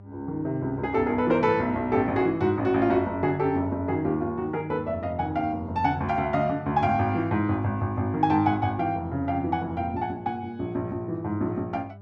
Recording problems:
electrical hum; 50 Hz, harmonics up to 800 Hz, SNR 19 dB

